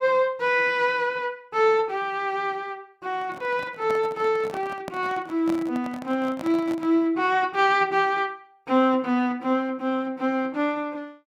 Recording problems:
handling noise; from 3 to 7 s; peak -6 dB vs average level

